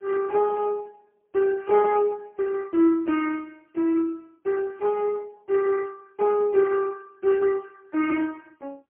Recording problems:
telephone audio; 240 Hz to 2.9 kHz, AMR-NB, then MP3

